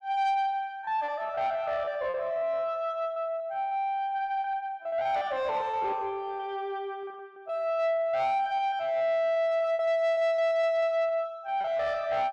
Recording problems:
distorted audio; soft clipping, signal-to-distortion ratio 12 dB
packet loss; 10% of the sound replaced, filled with repeated pitch periods

